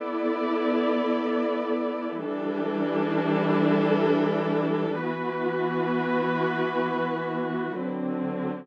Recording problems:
none

